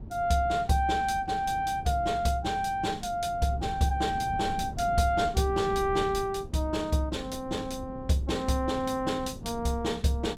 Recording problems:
wind noise; below 200 Hz, SNR 14 dB

